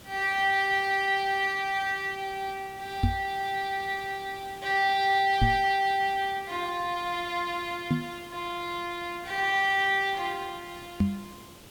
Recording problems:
lossy compression; Vorbis, log-spectral distance 2 dB
hiss; slope -3 dB per octave, SNR 21 dB
microphone thump; 4 times, first at 3 s; peak +6 dB vs average level

